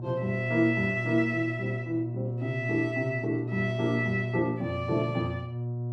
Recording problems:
hum; 60 Hz, harmonics up to 720 Hz, SNR 5 dB

